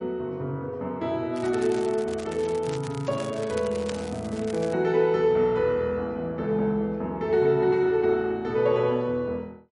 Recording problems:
lossy codec; MP3, log-spectral distance 2 dB
crackling; from 1.5 to 4.5 s; loose cable, SNR 18 dB

